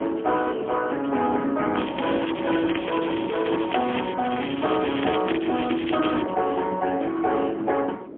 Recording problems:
phone line; 220 Hz to 3.3 kHz, AMR-NB, then MP3
wind on the microphone; below 430 Hz, SNR 11 dB
crackle; from 2 to 6 s; loose cable, SNR 12 dB

